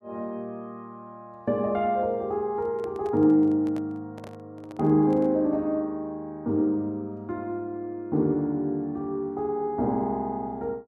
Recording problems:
handling noise; from 2.5 to 5.5 s; peak -12 dB vs average level

